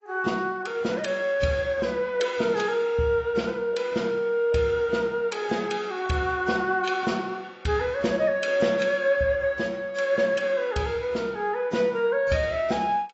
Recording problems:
lossy compression; AAC, log-spectral distance 2 dB, nothing above 7.8 kHz

